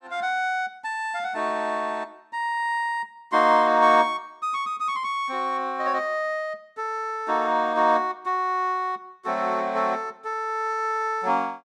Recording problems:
none

